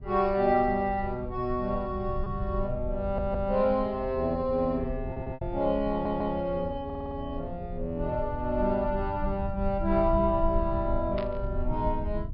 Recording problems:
low-pass filter; nothing above 5.5 kHz
low-frequency rumble; below 84 Hz, SNR 8 dB
lost packets; 0.9% of the sound replaced, filled with repeated pitch periods
audio stuttering; 4 times, first at 3 s
static burst; at 11 s; peak -7 dB vs average level

